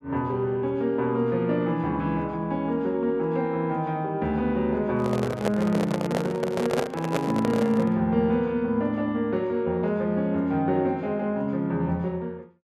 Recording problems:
microphone handling noise; from 5 to 8 s; peak +5 dB vs average level

